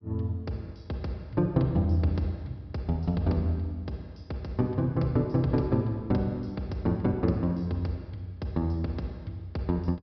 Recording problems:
low-pass filter; nothing above 5.5 kHz

